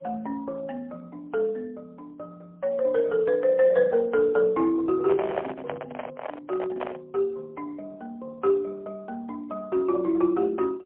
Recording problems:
telephone audio; 300 Hz to 2.7 kHz, AMR-NB, then MP3
microphone handling noise; from 5 to 7 s; peak -1 dB vs average level

